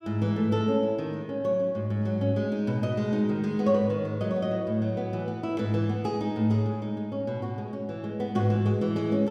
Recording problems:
none

